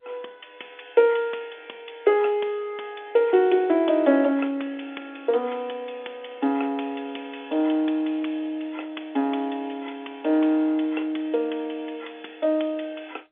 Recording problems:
telephone audio; 260 Hz to 3.5 kHz, G.711

